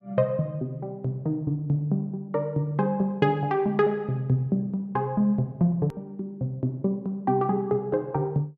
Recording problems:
click at an edit; at 6 s

